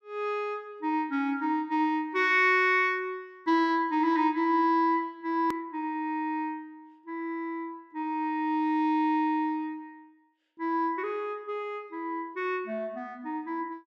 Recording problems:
edit click; at 5.5 s

